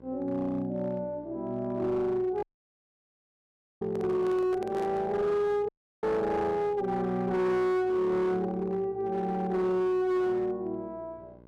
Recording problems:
distortion; hard clipping, signal-to-distortion ratio 12 dB
hum; 60 Hz, harmonics up to 1.6 kHz, SNR 25 dB
audio cutting out; at 2.5 s for 1.5 s and at 5.5 s
microphone handling noise; from 4 to 5 s; peak -8 dB vs average level

